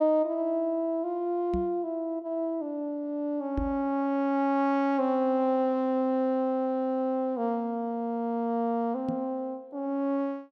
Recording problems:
knock on the microphone; at 1.5 s, at 3.5 s and at 9 s; peak -1 dB vs average level

